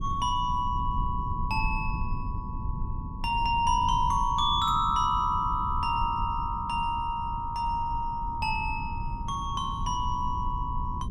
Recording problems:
low-frequency rumble; below 110 Hz, SNR 8 dB

